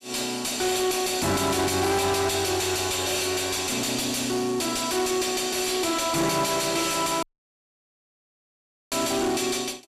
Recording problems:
distortion; soft clipping, signal-to-distortion ratio 6 dB
dropout; at 7 s for 1.5 s

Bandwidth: 14.5 kHz